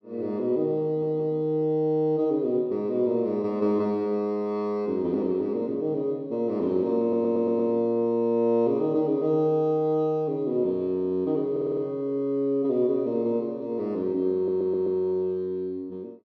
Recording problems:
audio stuttering; 4 times, first at 1 s

